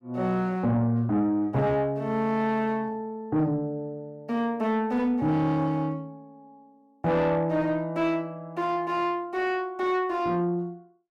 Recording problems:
distorted audio; soft clipping, signal-to-distortion ratio 11 dB

